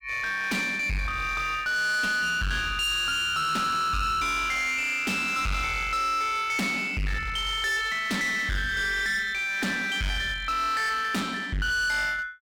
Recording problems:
distortion; hard clipping, uneven, signal-to-distortion ratio 6 dB

